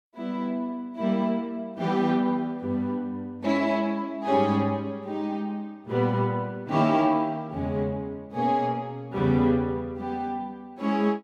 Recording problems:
none

